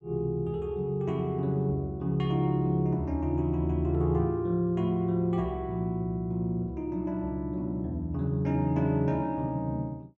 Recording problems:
none

